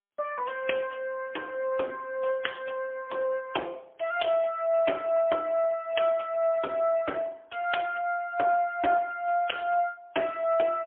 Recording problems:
telephone audio; 300 Hz to 3.3 kHz, AMR-NB, then MP3

